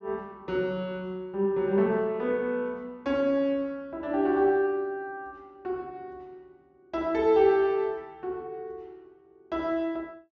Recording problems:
treble missing; nothing above 8 kHz

